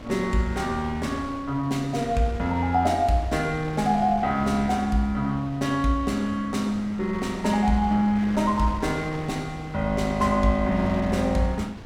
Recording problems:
wind noise; below 850 Hz, SNR 15 dB

